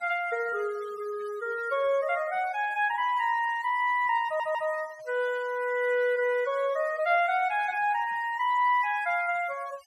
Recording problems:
noise reduction artefacts; signal-to-artefact ratio 22 dB
audio stuttering; at 4.5 s

